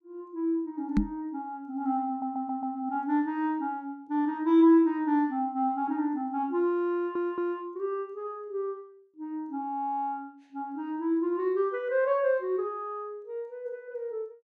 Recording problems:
microphone bump; at 1 s; peak +7 dB vs average level
stutter; at 2 s and at 7 s

